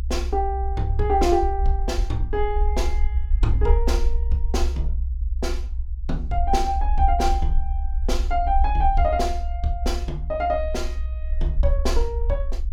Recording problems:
low-frequency rumble; below 62 Hz, SNR 0 dB

